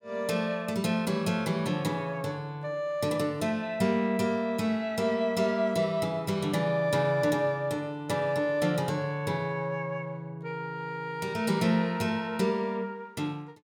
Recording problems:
none

